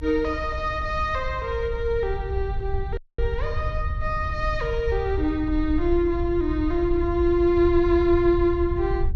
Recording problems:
low-frequency rumble; below 72 Hz, SNR 7 dB
dropout; at 3 s

